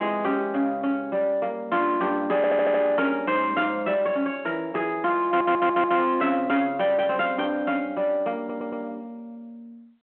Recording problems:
telephone audio; 170 Hz to 3.5 kHz, G.726
distortion; soft clipping, signal-to-distortion ratio 11 dB
stutter; at 2.5 s, at 5.5 s and at 8.5 s

